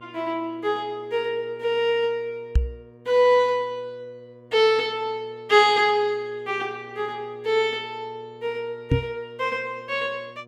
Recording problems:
hum; 60 Hz, harmonics up to 1.2 kHz, SNR 25 dB
knock on the microphone; at 2.5 s and at 9 s; peak +7 dB vs average level

